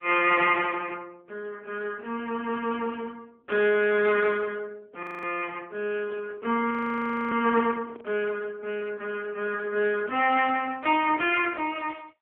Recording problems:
phone line; 190 Hz to 3.3 kHz, AMR-NB
audio freezing; at 5 s and at 6.5 s for 0.5 s
handling noise; from 6 to 8 s; peak -16 dB vs average level

